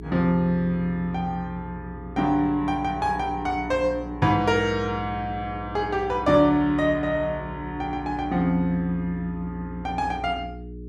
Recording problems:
hum; 60 Hz, harmonics up to 420 Hz, SNR 13 dB

